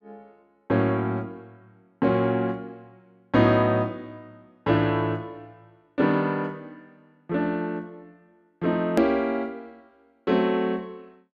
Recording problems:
edit click; at 9 s

